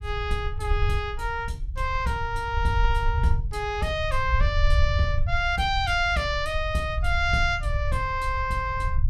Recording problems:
rumble; below 78 Hz, SNR 3 dB

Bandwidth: 15 kHz